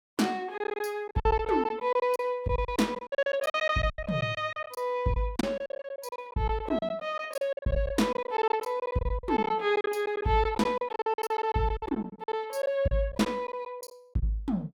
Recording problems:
packet loss; 17% of the sound replaced, filled with silence

